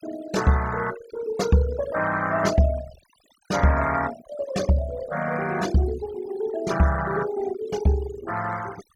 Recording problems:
noise reduction artefacts; signal-to-artefact ratio 15 dB

